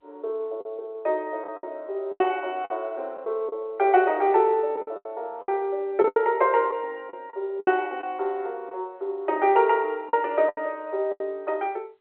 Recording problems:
telephone audio; 320 Hz to 3.1 kHz, G.711
packet loss; 8% of the sound replaced, filled with the last packet

